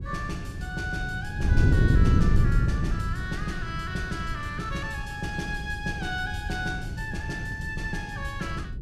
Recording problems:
wind on the microphone; below 140 Hz, SNR -4 dB

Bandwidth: 15 kHz